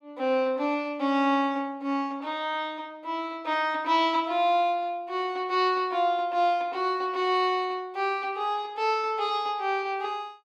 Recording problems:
none

